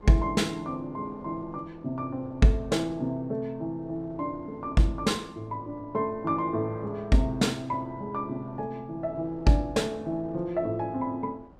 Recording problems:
wind on the microphone; below 610 Hz, SNR 23 dB

